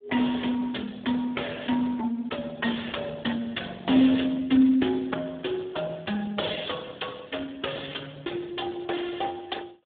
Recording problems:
telephone audio; 220 Hz to 3.5 kHz, Speex

